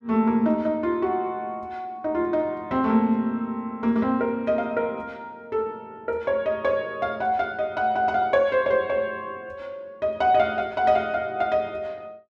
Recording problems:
none

